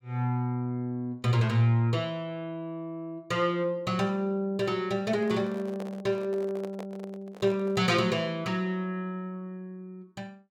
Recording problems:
microphone handling noise; from 5 to 8 s; peak -7 dB vs average level

